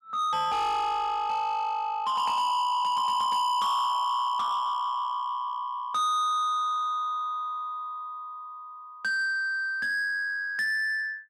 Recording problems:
distorted audio; soft clipping, signal-to-distortion ratio 7 dB

